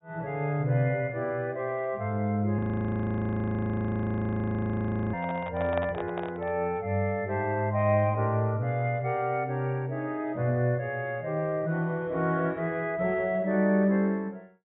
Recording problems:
low-pass filter; nothing above 4 kHz
audio freezing; at 2.5 s for 2.5 s
handling noise; from 5 to 6.5 s; peak -1 dB vs average level

